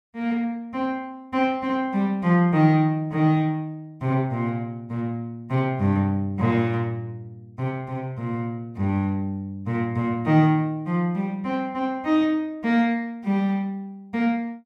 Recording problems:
none

